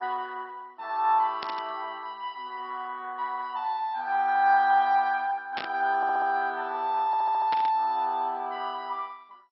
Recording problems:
lossy compression; MP2, log-spectral distance 3 dB
static burst; at 1.5 s, at 5.5 s and at 7.5 s; peak -4 dB vs average level
audio stuttering; at 6 s and at 7 s

